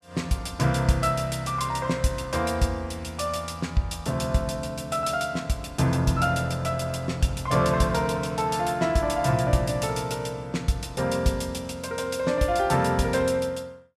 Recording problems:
none

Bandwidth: 14.5 kHz